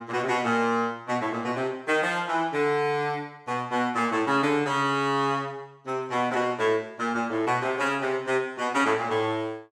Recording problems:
none

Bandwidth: 16 kHz